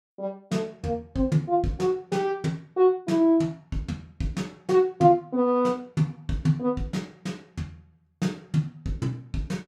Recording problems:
none

